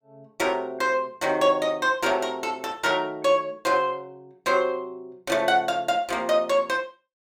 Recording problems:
none

